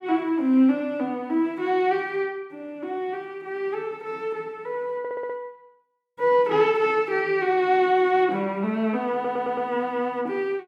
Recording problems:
stutter; at 5 s and at 9 s

